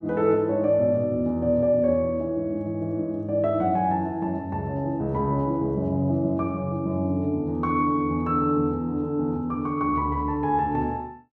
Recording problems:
none

